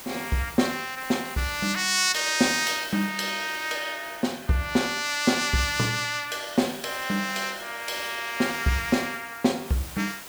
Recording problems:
background hiss; slope -2 dB per octave, SNR 15 dB

